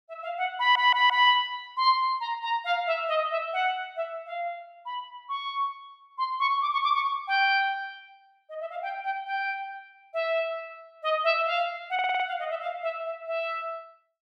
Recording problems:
stutter; at 0.5 s and at 12 s

